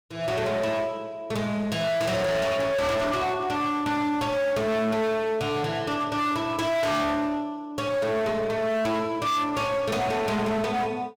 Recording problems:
distorted audio; hard clipping, uneven, signal-to-distortion ratio 7 dB

